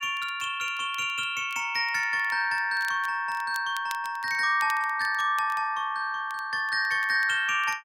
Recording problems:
crackle; vinyl, SNR 22 dB

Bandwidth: 16 kHz